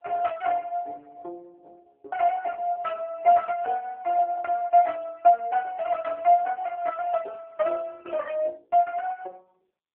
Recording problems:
phone line; 300 Hz to 2.8 kHz, AMR-NB

